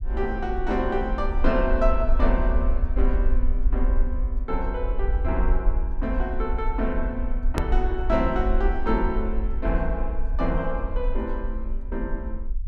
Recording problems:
low-frequency rumble; below 48 Hz, strongest tone 20 Hz, SNR -1 dB
click at an edit; at 7.5 s

